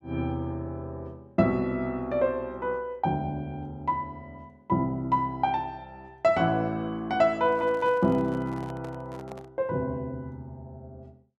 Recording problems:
microphone handling noise; from 7.5 to 9.5 s; peak -11 dB vs average level

